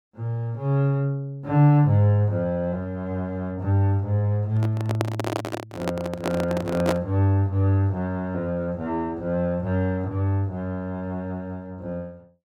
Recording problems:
microphone handling noise; from 4.5 to 7 s; peak +3 dB vs average level

